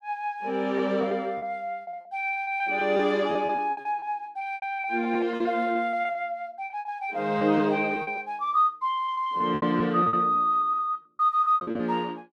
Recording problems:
packet loss; 15% of the sound replaced, filled with repeated pitch periods

